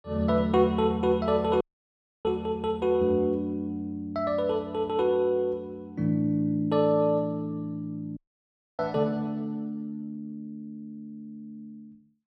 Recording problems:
audio cutting out; at 1.5 s for 0.5 s and at 8 s for 0.5 s

